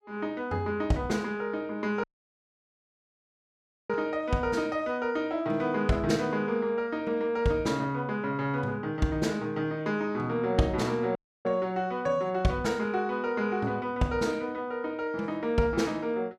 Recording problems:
audio cutting out; at 2 s for 2 s and at 11 s

